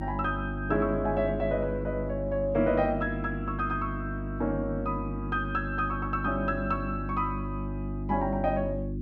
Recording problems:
hum; 50 Hz, harmonics up to 350 Hz, SNR 4 dB

